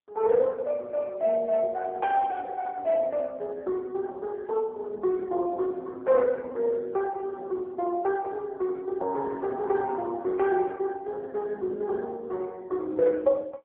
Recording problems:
telephone audio; 300 Hz to 2.3 kHz, AMR-NB

